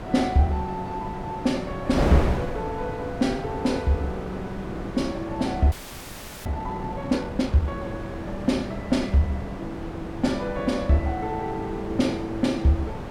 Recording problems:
wind noise; below 600 Hz, SNR 7 dB
audio freezing; at 5.5 s for 0.5 s

